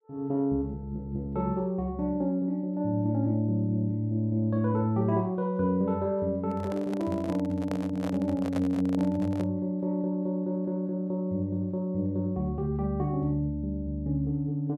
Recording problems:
handling noise; from 6.5 to 9.5 s; peak -3 dB vs average level

